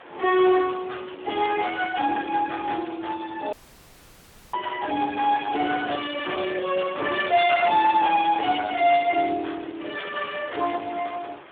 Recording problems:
telephone audio; 260 Hz to 3.6 kHz, Speex
distortion; hard clipping, uneven, signal-to-distortion ratio 12 dB
background hiss; SNR 22 dB
dropout; at 3.5 s for 1 s

